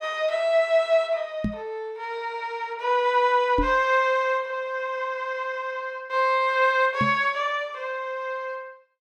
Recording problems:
microphone bump; at 1.5 s, at 3.5 s and at 7 s; peak +1 dB vs average level

